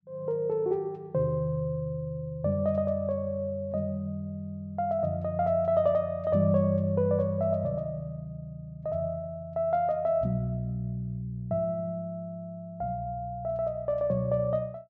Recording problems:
none

